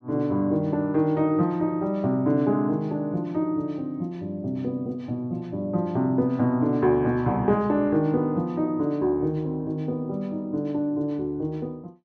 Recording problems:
none

